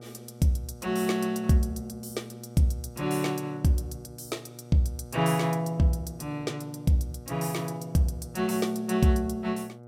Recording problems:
electrical hum; 60 Hz, harmonics up to 1.3 kHz, SNR 18 dB

